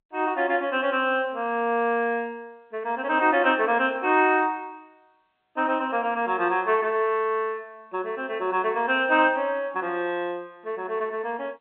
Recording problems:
phone line; 260 Hz to 3.3 kHz, G.711

